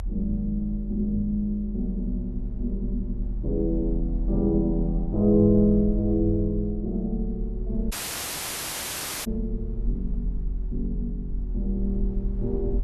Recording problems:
low-frequency rumble; below 44 Hz, strongest tone 42 Hz, SNR 6 dB
audio cutting out; at 8 s for 1.5 s

